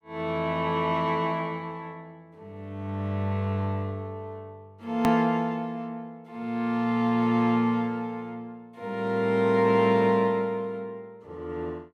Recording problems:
hard cut with a click; at 5 s

